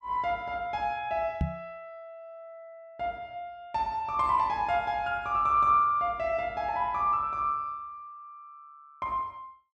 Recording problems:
knock on the microphone; at 1.5 s; peak +3 dB vs average level

